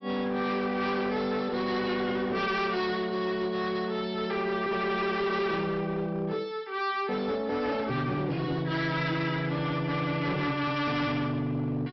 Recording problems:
low-pass filter; nothing above 5.5 kHz
codec artefacts; MP3, log-spectral distance 2 dB
distortion; hard clipping, signal-to-distortion ratio 10 dB

